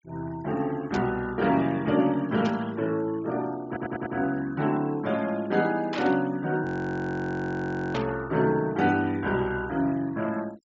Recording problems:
low-pass filter; nothing above 8 kHz
noise reduction artefacts; signal-to-artefact ratio 22 dB
static burst; 4 times, first at 1 s; peak -5 dB vs average level
stutter; at 3.5 s
audio freezing; at 6.5 s for 1.5 s

